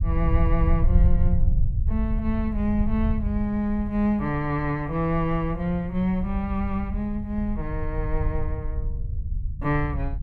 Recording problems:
rumble; below 80 Hz, SNR 2 dB

